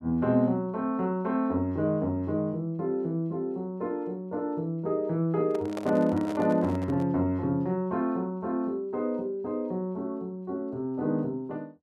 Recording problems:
handling noise; from 5.5 to 7 s; peak -3 dB vs average level

